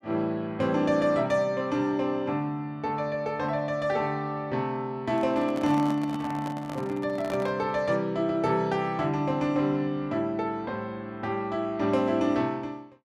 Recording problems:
microphone handling noise; from 5 to 7.5 s; peak -5 dB vs average level

